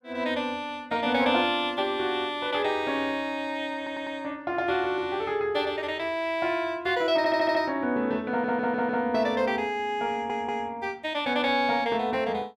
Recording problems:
stutter; 4 times, first at 4 s

